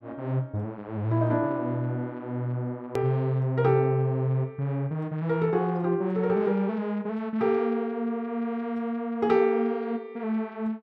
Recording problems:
click at an edit; at 3 s

